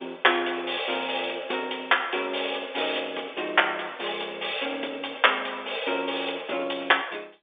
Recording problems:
phone line; 300 Hz to 3.6 kHz, G.711

